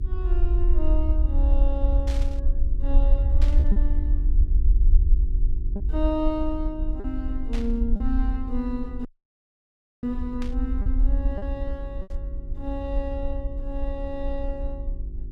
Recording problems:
electrical hum; 50 Hz, harmonics up to 400 Hz, SNR 9 dB
rumble; below 52 Hz, SNR -6 dB
packet loss; 3% of the sound replaced, filled with repeated pitch periods
burst of static; 5 times, first at 2 s; peak -4 dB vs average level
audio cutting out; at 9 s for 1 s

